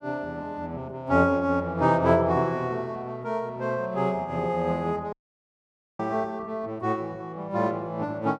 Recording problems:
dropout; at 5 s for 1 s

